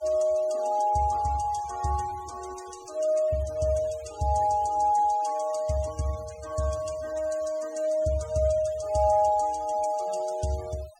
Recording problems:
noise reduction artefacts; signal-to-artefact ratio 21 dB

